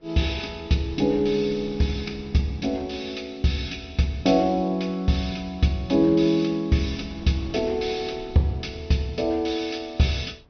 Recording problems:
treble missing; nothing above 5.9 kHz
wind on the microphone; below 410 Hz, SNR 22 dB

